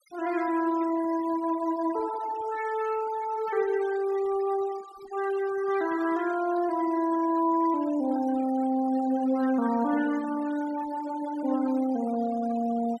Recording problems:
noise reduction artefacts; signal-to-artefact ratio 18 dB

